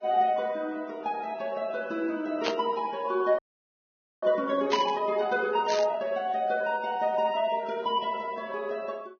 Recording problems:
lossy codec; Vorbis, log-spectral distance 3 dB
burst of static; at 2.5 s, at 4.5 s and at 5.5 s; peak +3 dB vs average level
frozen audio; at 3.5 s for 1 s

